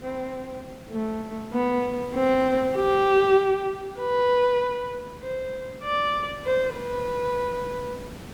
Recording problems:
hiss; slope -5 dB per octave, SNR 18 dB

